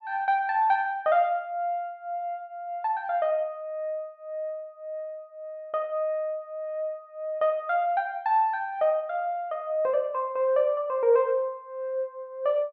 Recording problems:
none

